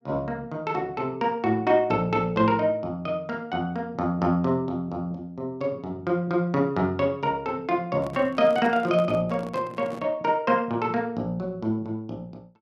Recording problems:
handling noise; from 8 to 10 s; peak -8 dB vs average level

